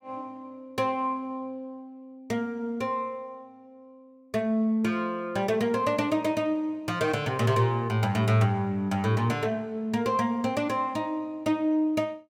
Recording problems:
none

